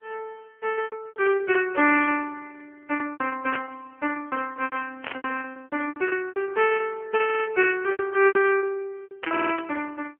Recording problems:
phone line; 260 Hz to 3.1 kHz, AMR-NB
lost packets; 16% of the sound replaced, filled with repeated pitch periods
burst of static; at 3.5 s, at 5 s and at 9 s; peak -2 dB vs average level
stutter; at 7.5 s and at 9.5 s

